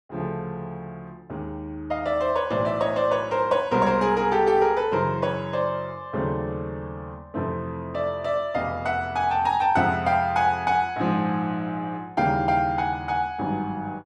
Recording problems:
none

